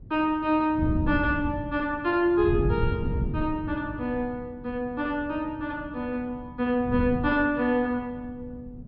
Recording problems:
treble missing; nothing above 5.5 kHz
wind noise; below 180 Hz, SNR 5 dB

